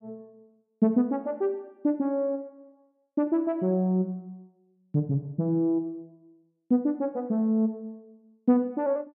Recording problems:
none

